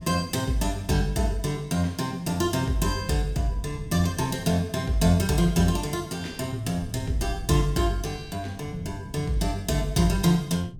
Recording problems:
wind noise; below 150 Hz, SNR 17 dB

